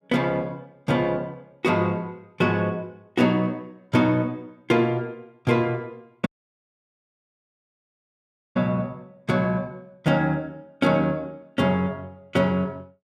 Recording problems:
dropout; at 6.5 s for 2.5 s

